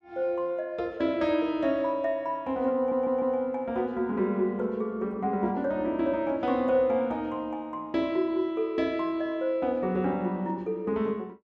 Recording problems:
audio stuttering; at 3 s

